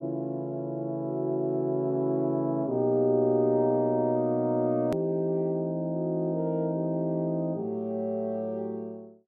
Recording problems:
click at an edit; at 5 s

